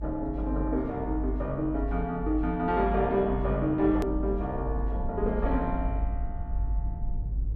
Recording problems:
rumble; below 54 Hz, strongest tone 50 Hz, SNR 5 dB
hard cut with a click; at 4 s

